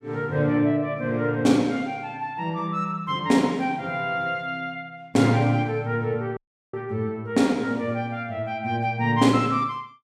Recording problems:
dropout; at 6.5 s

